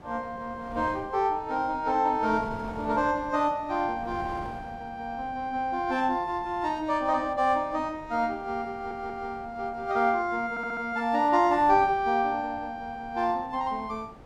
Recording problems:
wind on the microphone; below 740 Hz, SNR 19 dB
audio stuttering; at 8.5 s and at 11 s

